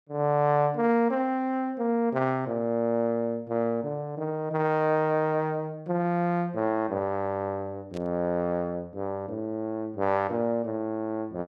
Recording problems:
burst of static; at 8 s; peak -16 dB vs average level

